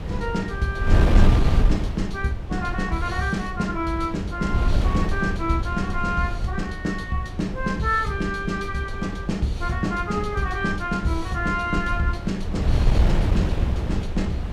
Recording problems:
wind on the microphone; below 110 Hz, SNR 1 dB

